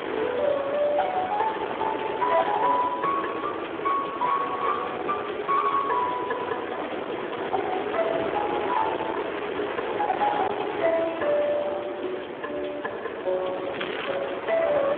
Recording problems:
phone line; 300 Hz to 3.4 kHz, Speex
distorted audio; hard clipping, uneven, signal-to-distortion ratio 10 dB
wind on the microphone; below 1.4 kHz, SNR 5 dB
crackle; at 14 s; loose cable, SNR 9 dB

